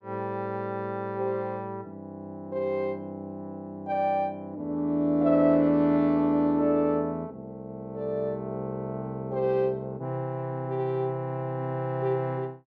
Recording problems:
none

